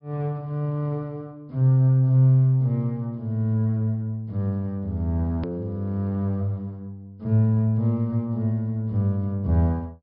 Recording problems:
treble missing; nothing above 5.5 kHz
click at an edit; at 5.5 s

